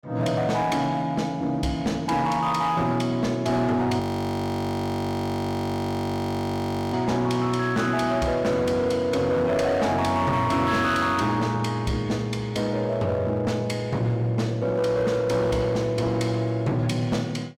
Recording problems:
distorted audio; hard clipping, uneven, signal-to-distortion ratio 11 dB
frozen audio; at 4 s for 3 s

